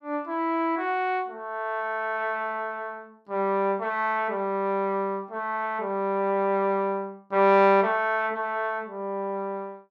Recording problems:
none

